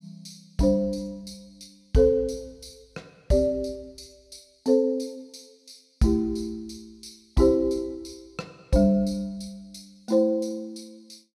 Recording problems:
none

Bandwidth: 15.5 kHz